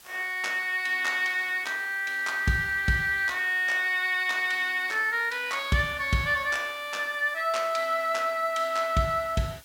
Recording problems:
hiss; slope +1 dB per octave, SNR 23 dB

